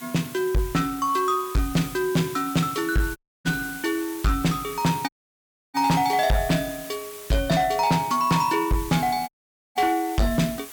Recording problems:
distortion; hard clipping, signal-to-distortion ratio 10 dB
hiss; slope 0 dB per octave, SNR 14 dB
dropout; at 3 s, at 5 s for 0.5 s and at 9.5 s

